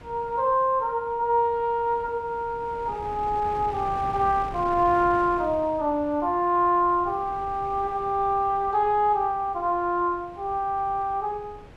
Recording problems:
wind noise; below 680 Hz, SNR 19 dB

